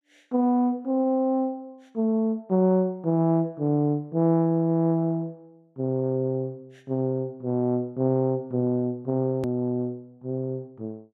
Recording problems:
hard cut with a click; at 9.5 s

